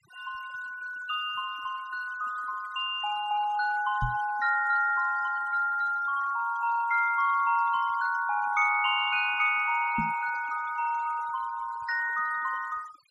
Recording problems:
denoising artefacts; signal-to-artefact ratio 17 dB
microphone thump; at 4 s and at 10 s; peak -1 dB vs average level

